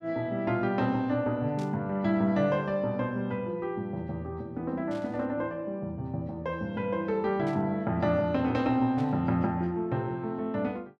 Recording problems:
burst of static; 4 times, first at 1.5 s; peak -14 dB vs average level

